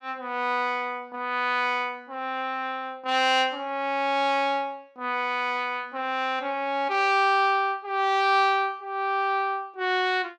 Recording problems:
none

